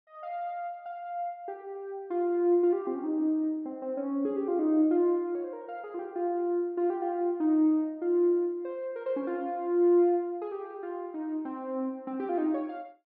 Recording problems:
low-pass filter; nothing above 5.3 kHz

